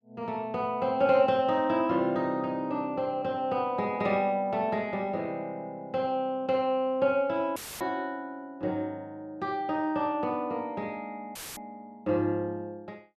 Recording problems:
dropout; at 7.5 s and at 11 s; filled with static

